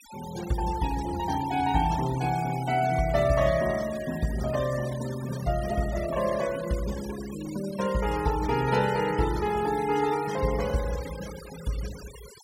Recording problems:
denoising artefacts; signal-to-artefact ratio 15 dB

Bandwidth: 16 kHz